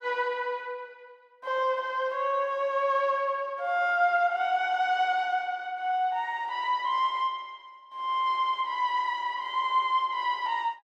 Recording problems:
none

